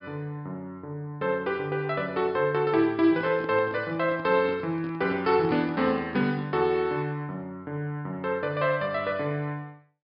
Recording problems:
treble cut off; nothing above 5.5 kHz
microphone handling noise; from 3 to 6.5 s; peak -8 dB vs average level

